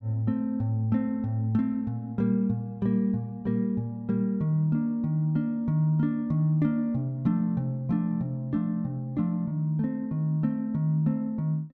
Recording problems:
none

